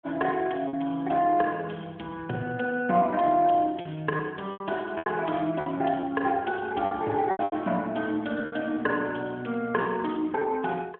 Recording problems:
telephone audio; 260 Hz to 3.6 kHz, AMR-NB
lost packets; 6% of the sound replaced, filled with repeated pitch periods

